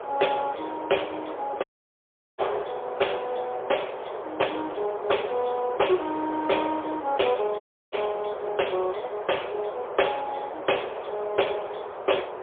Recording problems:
telephone audio; 340 Hz to 3.4 kHz, AMR-NB, then MP3
wind on the microphone; below 960 Hz, SNR 7 dB
audio cutting out; at 1.5 s for 0.5 s and at 7.5 s

